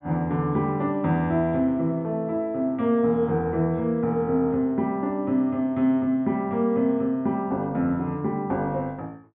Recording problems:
low-pass filter; nothing above 4 kHz

